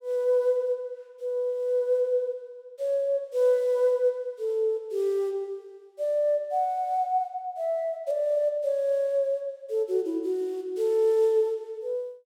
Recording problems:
none

